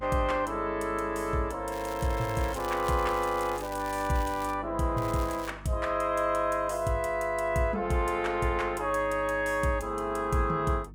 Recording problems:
electrical hum; 50 Hz, harmonics up to 350 Hz, SNR 18 dB
crackle; from 1.5 to 4.5 s and at 5 s; loose cable, SNR 17 dB

